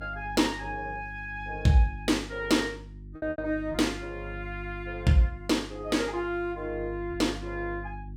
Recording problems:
hum; 50 Hz, harmonics up to 350 Hz, SNR 13 dB
lost packets; 2% of the sound replaced, filled with repeated pitch periods

